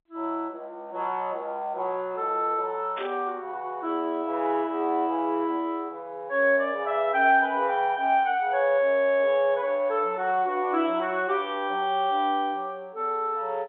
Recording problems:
telephone audio; 240 Hz to 3.6 kHz, G.711
static burst; at 3 s; peak -8 dB vs average level

